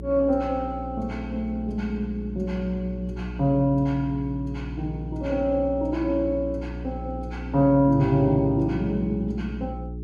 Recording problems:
hum; 60 Hz, harmonics up to 420 Hz, SNR 10 dB

